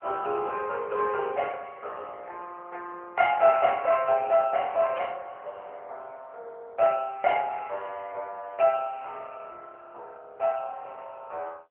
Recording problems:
telephone audio; 370 Hz to 2.8 kHz, AMR-NB
burst of static; at 5 s; peak -12 dB vs average level

